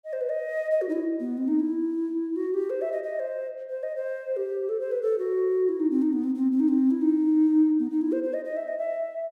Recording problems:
none

